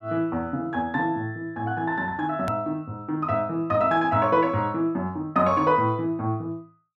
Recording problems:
hard cut with a click; at 2.5 s

